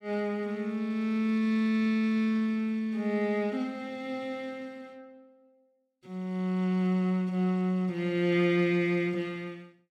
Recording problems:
none

